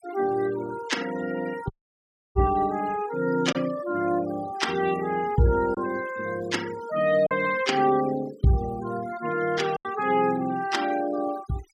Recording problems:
denoising artefacts; signal-to-artefact ratio 15 dB
lost packets; 1.5% of the sound replaced, filled with silence
audio cutting out; at 1.5 s for 0.5 s

